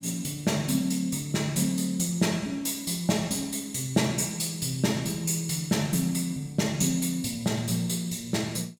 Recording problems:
none

